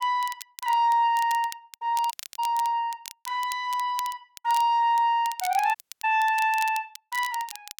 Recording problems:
crackling; vinyl, SNR 16 dB
dropout; at 2 s and at 6 s

